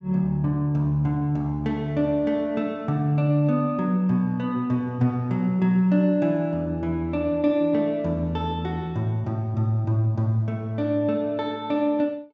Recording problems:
treble cut off; nothing above 8 kHz

